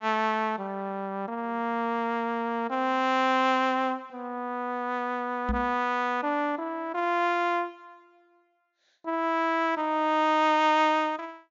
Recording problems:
low-pass filter; nothing above 7.2 kHz
knock on the microphone; at 5.5 s; peak 0 dB vs average level

